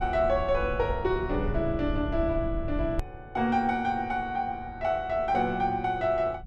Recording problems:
low-frequency rumble; below 90 Hz, SNR 9 dB
click at an edit; at 3 s

